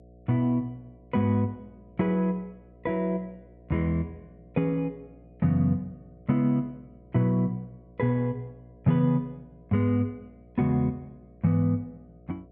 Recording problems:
hum; 60 Hz, harmonics up to 720 Hz, SNR 26 dB

